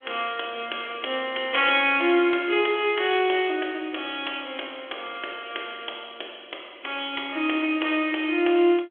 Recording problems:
telephone audio; 280 Hz to 3.4 kHz, G.726

